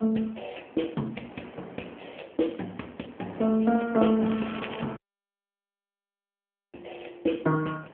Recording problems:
phone line; 130 Hz to 3.3 kHz, AMR-NB
wind on the microphone; below 890 Hz, SNR 16 dB
crackle; at 4.5 s; loose cable, SNR 13 dB
audio cutting out; at 5 s for 2 s

